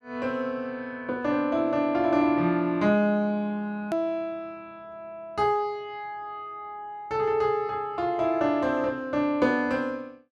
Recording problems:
edit click; at 4 s

